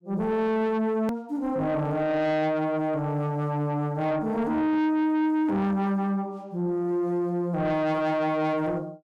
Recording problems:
distorted audio; soft clipping, signal-to-distortion ratio 10 dB
edit click; at 1 s

